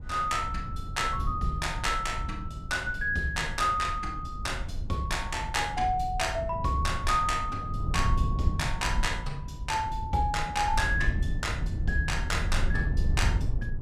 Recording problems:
low-frequency rumble; below 94 Hz, SNR 4 dB

